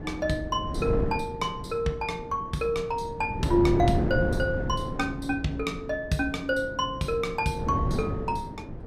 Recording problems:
wind on the microphone; below 300 Hz, SNR 4 dB

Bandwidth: 15.5 kHz